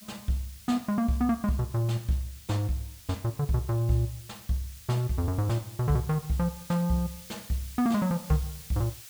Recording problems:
hiss; slope +4 dB per octave, SNR 17 dB

